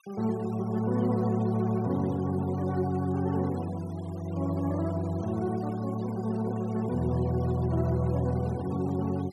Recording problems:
noise reduction artefacts; signal-to-artefact ratio 22 dB

